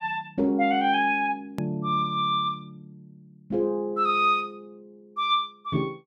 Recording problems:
edit click; at 1.5 s

